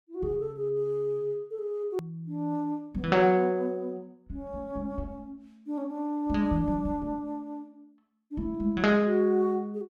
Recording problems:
click at an edit; at 2 s

